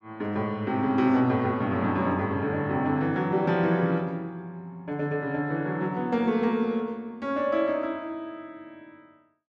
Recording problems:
none

